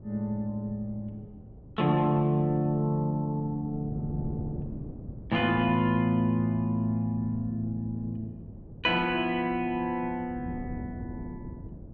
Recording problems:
low-pass filter; nothing above 7.7 kHz
wind on the microphone; below 240 Hz, SNR 14 dB

